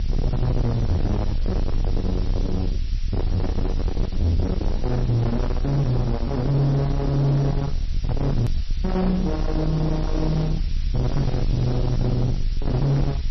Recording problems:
lossy compression; MP3, log-spectral distance 6 dB, nothing above 13.1 kHz
distortion; soft clipping, signal-to-distortion ratio 6 dB
hiss; slope +3 dB per octave, SNR 21 dB
low-frequency rumble; below 120 Hz, strongest tone 28 Hz, SNR 3 dB
hard cut with a click; at 8.5 s

